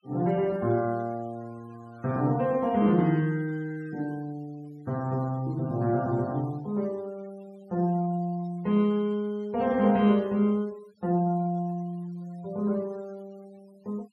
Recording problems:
denoising artefacts; signal-to-artefact ratio 27 dB

